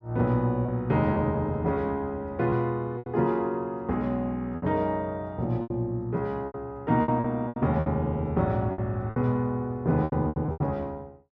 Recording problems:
lost packets; 9% of the sound replaced, filled with repeated pitch periods

